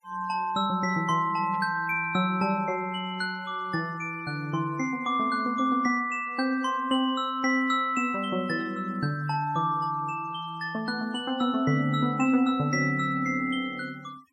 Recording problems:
denoising artefacts; signal-to-artefact ratio 26 dB
static burst; at 1.5 s and at 8.5 s; peak -20 dB vs average level

